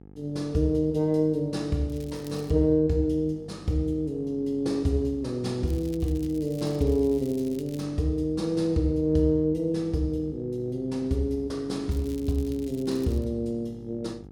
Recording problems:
hum; 50 Hz, harmonics up to 900 Hz, SNR 20 dB
crackle; at 2 s, from 5.5 to 8 s and from 12 to 13 s; loose cable, SNR 24 dB

